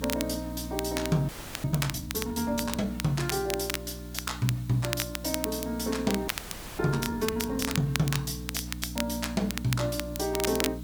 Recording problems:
hum; 60 Hz, harmonics up to 300 Hz, SNR 9 dB
hiss; SNR 20 dB
crackle; vinyl, SNR 6 dB
audio freezing; at 1.5 s and at 6.5 s for 0.5 s

